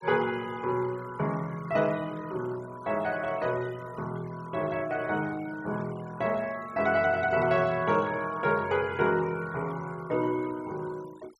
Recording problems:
denoising artefacts; signal-to-artefact ratio 20 dB

